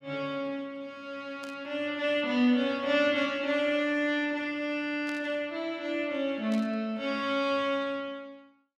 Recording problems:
burst of static; at 1.5 s, at 5 s and at 6.5 s; peak -11 dB vs average level

